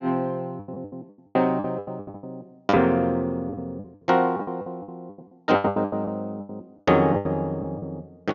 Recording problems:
treble missing; nothing above 6.9 kHz
packet loss; 20% of the sound replaced, filled with the last packet

